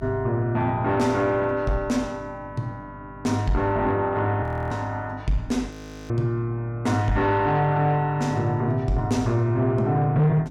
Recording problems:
distortion; soft clipping, signal-to-distortion ratio 10 dB
hum; 50 Hz, harmonics up to 300 Hz, SNR 20 dB
audio freezing; at 4.5 s and at 5.5 s

